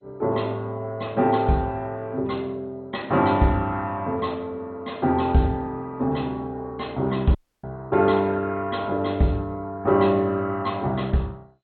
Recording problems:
lossy compression; MP2, then MP2, log-spectral distance 2 dB, nothing above 4.2 kHz
audio cutting out; at 7.5 s

